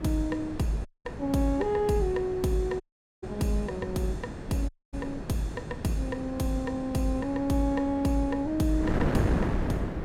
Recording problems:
wind on the microphone; below 400 Hz, SNR 5 dB
audio cutting out; at 1 s, at 3 s and at 4.5 s

